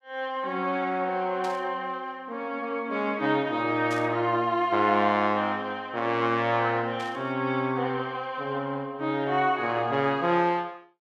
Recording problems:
burst of static; at 1.5 s, at 4 s and at 7 s; peak -10 dB vs average level

